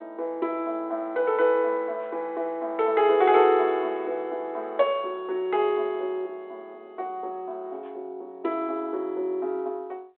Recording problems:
phone line; 280 Hz to 3.8 kHz, G.726

